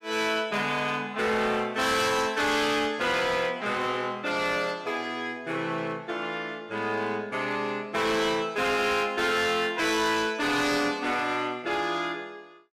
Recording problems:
distorted audio; hard clipping, signal-to-distortion ratio 11 dB

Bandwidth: 14.5 kHz